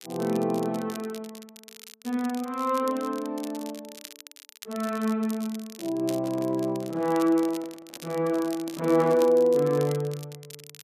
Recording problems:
crackling; vinyl, SNR 18 dB
microphone handling noise; from 6 to 9.5 s; peak -12 dB vs average level

